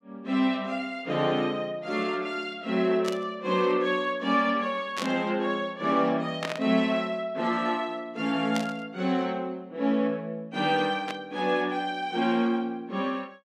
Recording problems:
static burst; 5 times, first at 3 s; peak -2 dB vs average level

